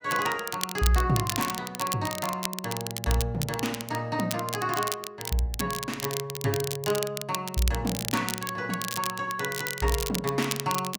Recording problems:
crackling; vinyl, SNR 5 dB

